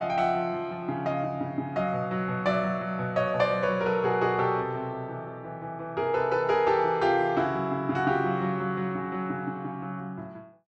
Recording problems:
treble missing; nothing above 7.8 kHz

